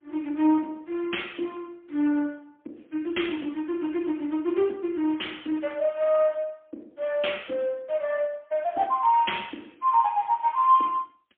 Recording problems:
telephone audio; 240 Hz to 3.5 kHz, AMR-NB, then MP3

